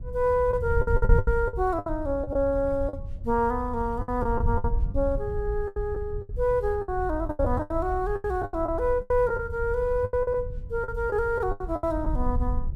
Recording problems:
wind noise; below 82 Hz, SNR 6 dB
lost packets; 14% of the sound replaced, filled with the last packet

